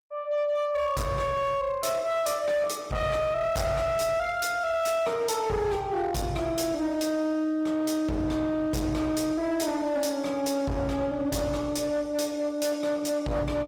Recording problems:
lossy codec; Opus, log-spectral distance 3 dB, nothing above 19 kHz
distorted audio; hard clipping, signal-to-distortion ratio 10 dB

